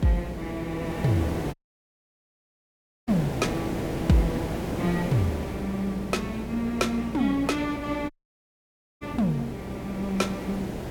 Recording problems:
hum; 60 Hz, harmonics up to 420 Hz, SNR 13 dB
hiss; SNR 6 dB
audio cutting out; at 1.5 s for 1.5 s and at 8 s for 1 s

